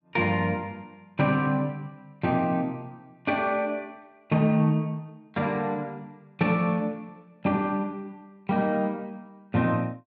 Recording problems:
none

